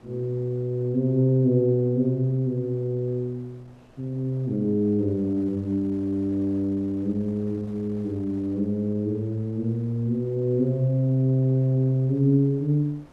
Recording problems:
wind noise; below 830 Hz, SNR 28 dB

